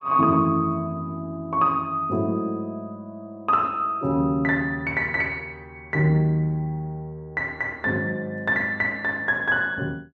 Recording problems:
none

